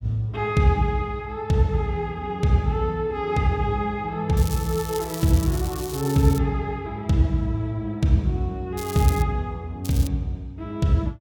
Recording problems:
crackle; from 4.5 to 6.5 s, at 9 s and at 10 s; loose cable, SNR 13 dB

